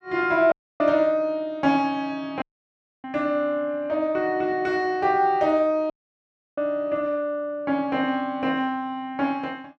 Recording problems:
audio cutting out; at 0.5 s, at 2.5 s for 0.5 s and at 6 s for 0.5 s

